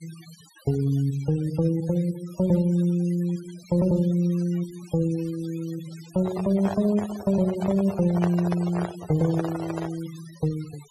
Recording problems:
denoising artefacts; signal-to-artefact ratio 19 dB
handling noise; from 6 to 10 s; peak -1 dB vs average level

